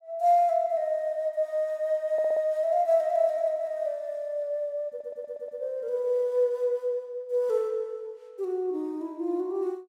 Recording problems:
audio stuttering; at 2 s and at 5 s

